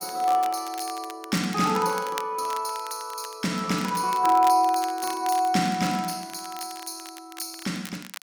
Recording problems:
crackling; vinyl, SNR 16 dB

